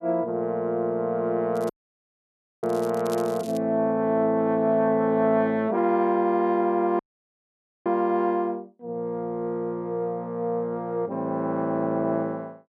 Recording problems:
crackle; from 1.5 to 3.5 s; loose cable, SNR 21 dB
dropout; at 1.5 s for 1 s and at 7 s for 1 s

